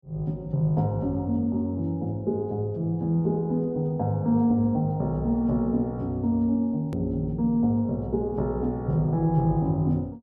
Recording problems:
click at an edit; at 7 s

